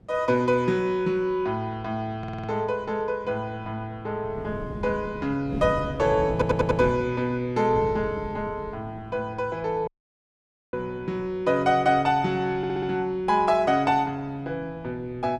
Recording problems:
wind noise; below 270 Hz, SNR 13 dB
stutter; at 2 s, at 6.5 s and at 13 s
audio cutting out; at 10 s for 1 s

